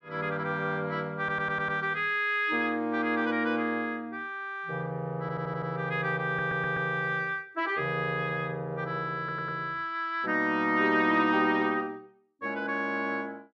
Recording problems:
stutter; 4 times, first at 1 s

